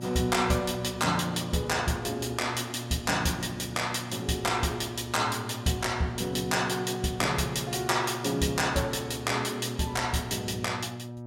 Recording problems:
mains hum; 60 Hz, harmonics up to 1.2 kHz, SNR 11 dB

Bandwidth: 16 kHz